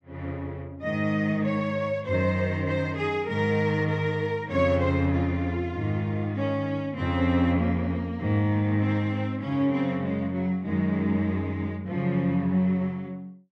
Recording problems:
none

